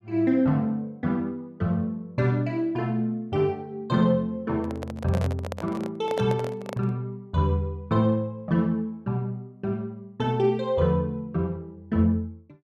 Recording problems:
handling noise; from 4.5 to 7 s; peak -2 dB vs average level

